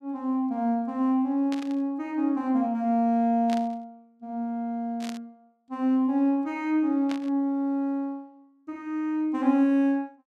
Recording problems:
static burst; 4 times, first at 1.5 s; peak -8 dB vs average level

